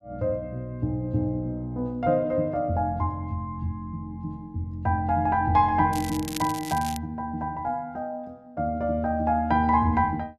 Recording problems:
crackling; from 6 to 7 s; loose cable, SNR 12 dB

